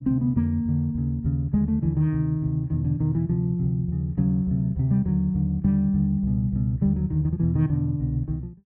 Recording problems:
none

